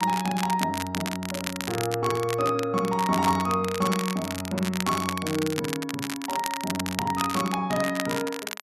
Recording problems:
crackle; vinyl, SNR 6 dB

